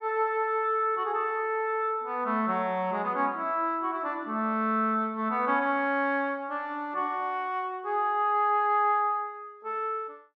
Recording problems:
none

